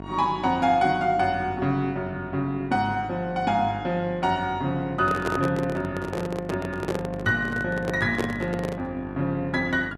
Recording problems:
hum; 50 Hz, harmonics up to 1.9 kHz, SNR 13 dB
handling noise; from 5 to 9 s; peak +2 dB vs average level

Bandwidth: 13 kHz